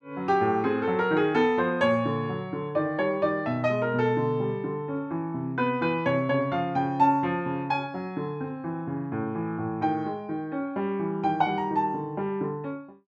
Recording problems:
none

